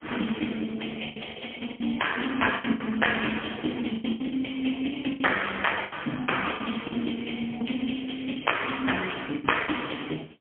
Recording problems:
phone line; 170 Hz to 3.3 kHz, AMR-NB, then MP3
lost packets; 10% of the sound replaced, filled with the last packet

